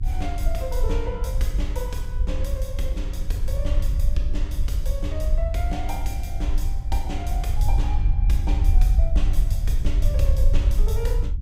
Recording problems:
hum; 60 Hz, harmonics up to 300 Hz, SNR 19 dB
rumble; below 60 Hz, SNR -8 dB

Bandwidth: 15.5 kHz